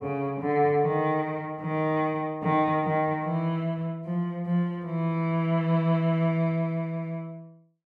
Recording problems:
none

